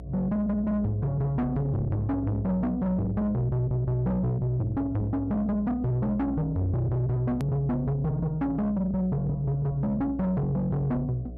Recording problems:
distorted audio; soft clipping, signal-to-distortion ratio 7 dB
electrical hum; 60 Hz, harmonics up to 720 Hz, SNR 13 dB
edit click; at 7.5 s

